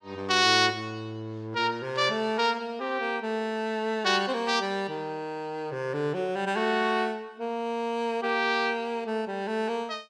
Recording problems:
none

